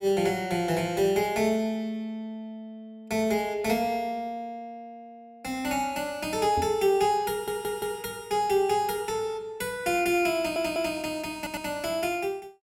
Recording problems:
knock on the microphone; at 6.5 s; peak -3 dB vs average level
stutter; at 7.5 s, at 10 s and at 11 s

